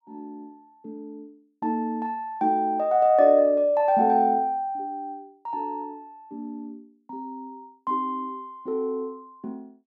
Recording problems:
none

